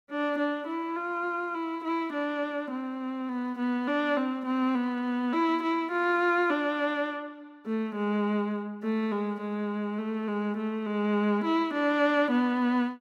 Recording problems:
none

